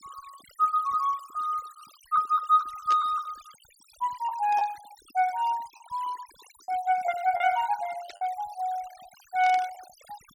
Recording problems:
denoising artefacts; signal-to-artefact ratio 21 dB
packet loss; 4% of the sound replaced, filled with the last packet
burst of static; 4 times, first at 3 s; peak -8 dB vs average level

